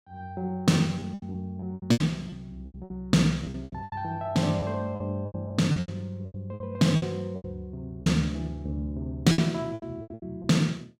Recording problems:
lost packets; 15% of the sound replaced, filled with repeated pitch periods

